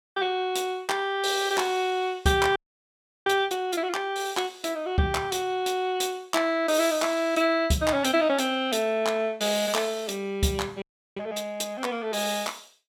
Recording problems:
frozen audio; at 2.5 s for 0.5 s and at 11 s

